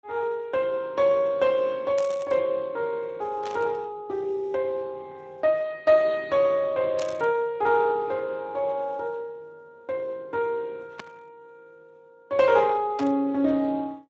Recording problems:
codec artefacts; Speex, log-spectral distance 2 dB
static burst; 5 times, first at 2 s; peak -8 dB vs average level

